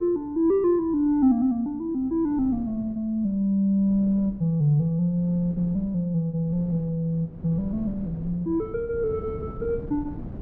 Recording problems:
wind on the microphone; below 230 Hz, SNR 17 dB

